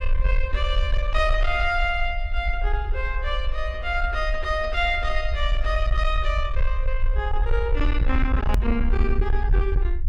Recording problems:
distorted audio; soft clipping, signal-to-distortion ratio 11 dB
low-frequency rumble; below 56 Hz, SNR 0 dB
edit click; at 8.5 s

